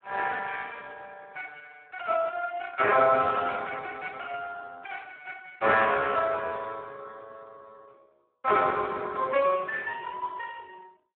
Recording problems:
phone line; 280 Hz to 2.2 kHz, Speex

